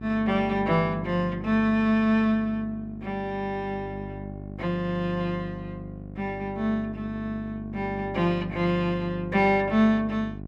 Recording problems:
hum; 50 Hz, harmonics up to 800 Hz, SNR 12 dB

